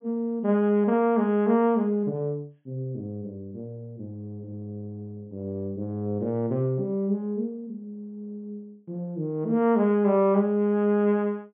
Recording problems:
low-pass filter; nothing above 3.4 kHz

